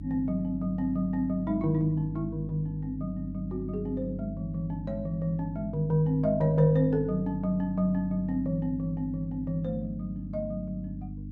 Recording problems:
electrical hum; 50 Hz, harmonics up to 300 Hz, SNR 9 dB

